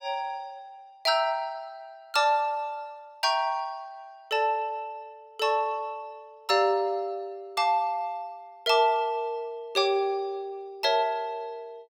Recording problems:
none

